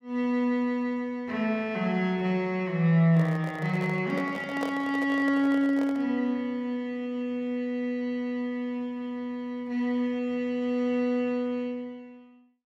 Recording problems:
handling noise; from 3 to 6 s; peak -2 dB vs average level

